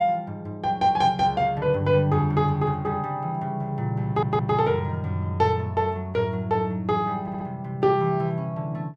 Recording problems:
stutter; at 4 s and at 7 s

